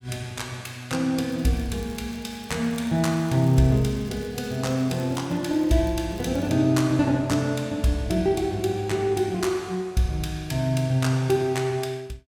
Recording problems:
crackle; from 1.5 to 6.5 s; loose cable, SNR 27 dB

